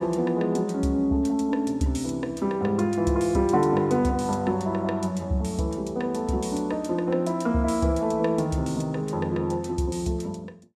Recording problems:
none

